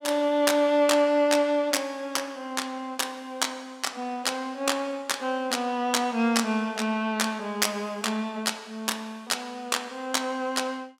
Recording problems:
none

